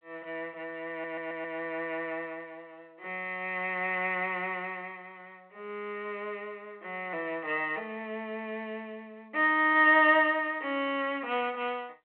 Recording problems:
telephone audio; 340 Hz to 3.4 kHz, G.726
stutter; at 1 s

